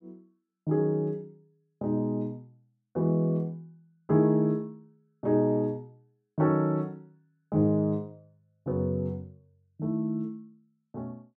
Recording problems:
none

